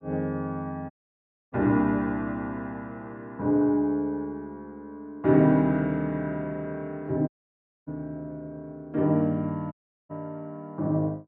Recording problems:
dropout; at 1 s for 0.5 s, at 7.5 s for 0.5 s and at 9.5 s

